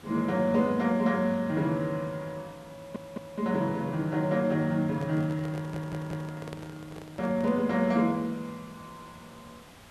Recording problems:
hiss; slope -3 dB per octave, SNR 23 dB
stutter; at 3 s and at 5.5 s
handling noise; from 5 to 7.5 s; peak -9 dB vs average level

